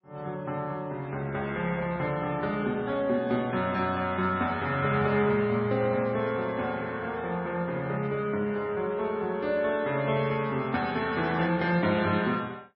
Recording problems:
codec artefacts; MP3, log-spectral distance 2 dB, nothing above 5.5 kHz

